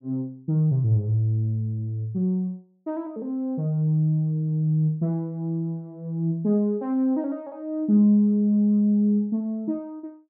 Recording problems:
none

